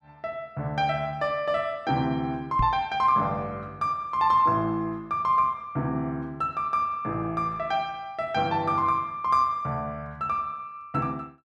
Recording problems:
microphone bump; at 2.5 s; peak +1 dB vs average level

